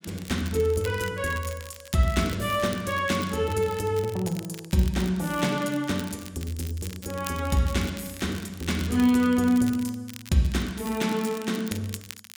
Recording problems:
crackling; vinyl, SNR 16 dB

